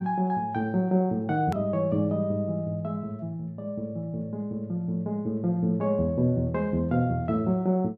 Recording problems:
edit click; at 1.5 s

